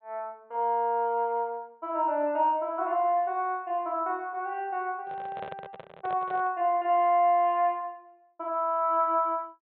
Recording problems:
treble missing; nothing above 4 kHz
microphone handling noise; from 5 to 6.5 s; peak -9 dB vs average level

